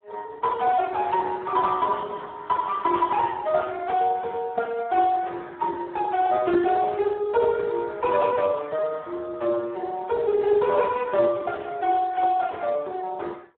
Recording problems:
phone line; 280 Hz to 3 kHz, Speex
static burst; at 3 s; peak -10 dB vs average level

